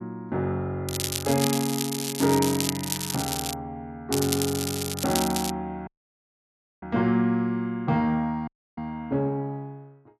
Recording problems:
crackle; from 1 to 3.5 s and from 4 to 5.5 s; loose cable, SNR 3 dB
dropout; at 6 s for 1 s and at 8.5 s

